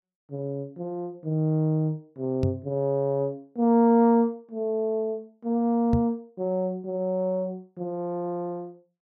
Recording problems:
microphone thump; at 2.5 s and at 6 s; peak +4 dB vs average level

